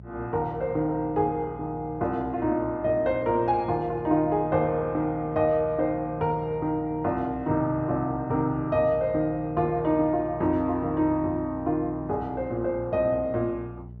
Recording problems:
hum; 60 Hz, harmonics up to 600 Hz, SNR 17 dB

